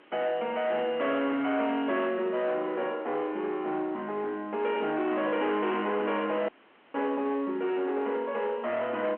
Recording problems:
telephone audio; 220 Hz to 3.3 kHz, G.711
distortion; soft clipping, signal-to-distortion ratio 12 dB
background hiss; SNR 27 dB
dropout; at 6.5 s

